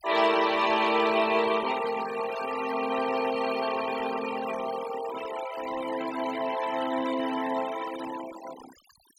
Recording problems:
noise reduction artefacts; signal-to-artefact ratio 11 dB

